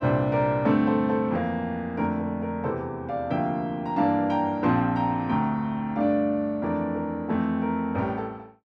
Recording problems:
none

